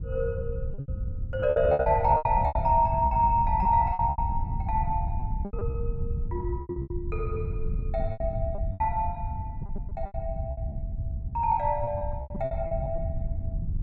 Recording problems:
wind on the microphone; below 100 Hz, SNR 5 dB
packet loss; 15% of the sound replaced, filled with repeated pitch periods

